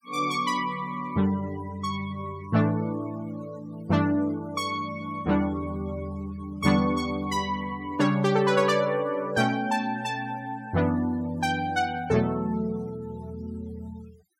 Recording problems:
noise reduction artefacts; signal-to-artefact ratio 23 dB

